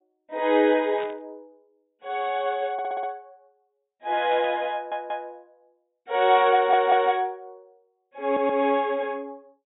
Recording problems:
treble cut off; nothing above 4 kHz
static burst; at 1 s and at 4.5 s; peak -14 dB vs average level
audio stuttering; 4 times, first at 2.5 s

